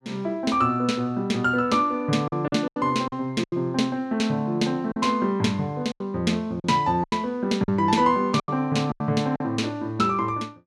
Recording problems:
packet loss; 7% of the sound replaced, filled with silence

